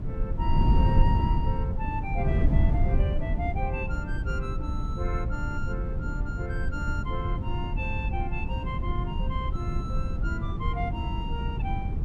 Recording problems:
wind noise; below 110 Hz, SNR -6 dB

